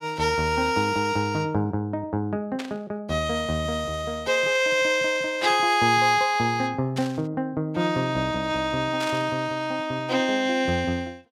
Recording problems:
burst of static; 4 times, first at 2.5 s; peak -6 dB vs average level

